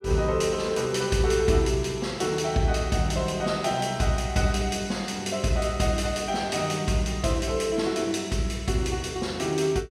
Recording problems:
none

